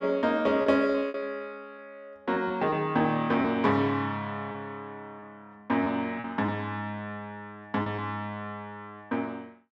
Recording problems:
lost packets; 5% of the sound replaced, filled with repeated pitch periods

